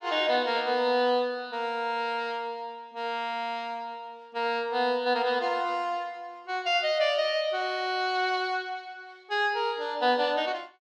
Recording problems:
none

